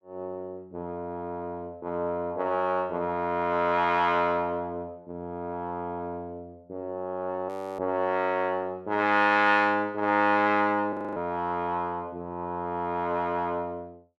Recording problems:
audio freezing; at 7.5 s and at 11 s

